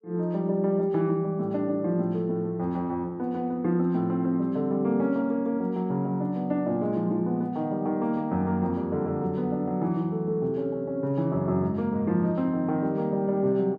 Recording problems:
none

